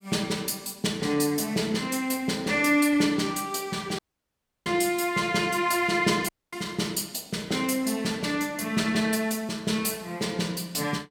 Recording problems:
dropout; at 4 s for 0.5 s and at 6.5 s

